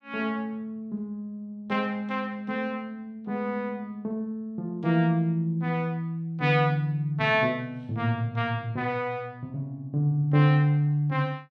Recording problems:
none

